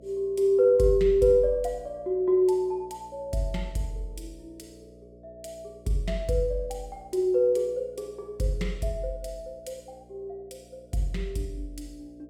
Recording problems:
hum; 60 Hz, harmonics up to 660 Hz, SNR 26 dB

